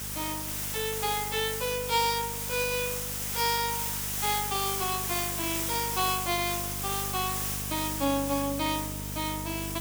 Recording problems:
hum; 50 Hz, harmonics up to 700 Hz, SNR 10 dB
background hiss; slope +1 dB per octave, SNR 0 dB

